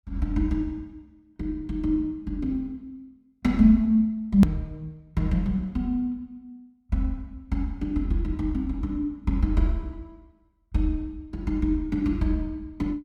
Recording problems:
hard cut with a click; at 4.5 s

